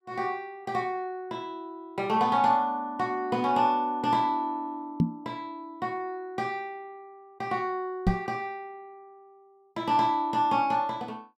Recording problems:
microphone thump; at 5 s and at 8 s; peak +9 dB vs average level

